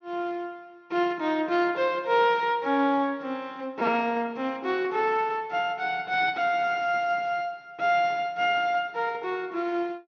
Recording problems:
treble cut off; nothing above 6.4 kHz

